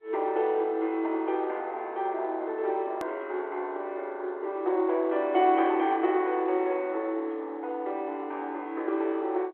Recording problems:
telephone audio; 280 Hz to 4 kHz, G.711
hard cut with a click; at 3 s

